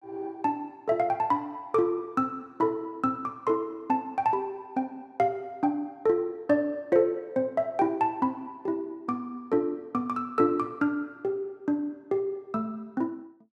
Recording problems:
none

